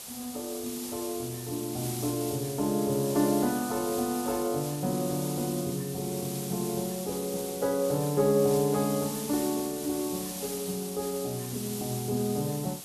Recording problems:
background hiss; SNR 7 dB

